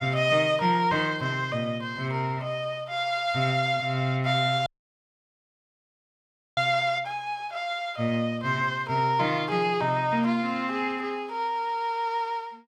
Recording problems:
audio cutting out; at 4.5 s for 2 s

